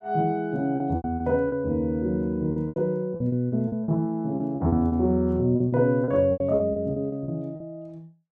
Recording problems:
lost packets; 14% of the sound replaced, filled with repeated pitch periods

